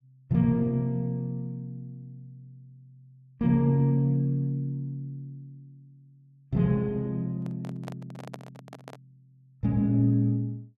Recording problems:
handling noise; from 7.5 to 9 s; peak -9 dB vs average level

